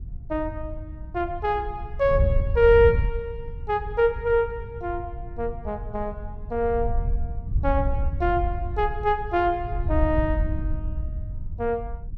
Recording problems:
wind noise; below 84 Hz, SNR 6 dB

